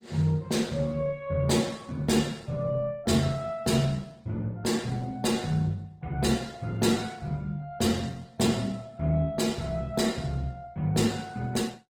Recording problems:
lossy codec; Opus, log-spectral distance 3 dB, nothing above 19 kHz

